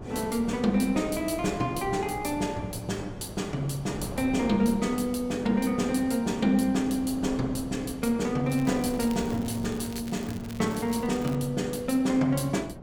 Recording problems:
hum; 60 Hz, harmonics up to 360 Hz, SNR 21 dB
wind on the microphone; below 500 Hz, SNR 14 dB
crackle; from 8.5 to 11 s; loose cable, SNR 19 dB

